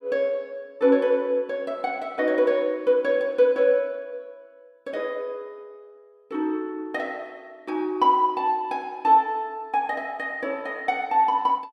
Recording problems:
none

